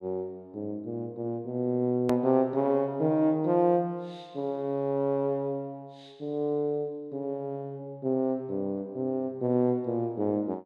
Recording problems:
hard cut with a click; at 2 s

